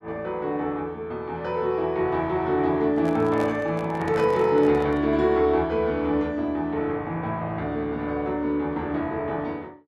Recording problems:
microphone handling noise; from 3 to 5 s; peak -5 dB vs average level

